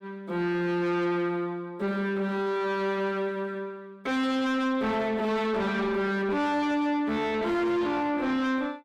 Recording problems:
distorted audio; soft clipping, signal-to-distortion ratio 7 dB

